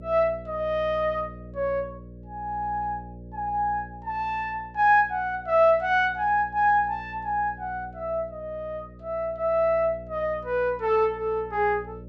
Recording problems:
electrical hum; 60 Hz, harmonics up to 600 Hz, SNR 19 dB

